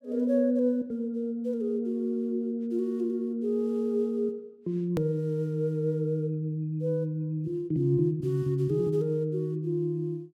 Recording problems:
click at an edit; at 5 s

